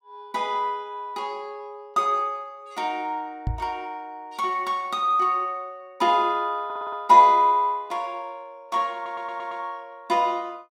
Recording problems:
microphone bump; at 3.5 s; peak 0 dB vs average level
stutter; at 6.5 s and at 9 s

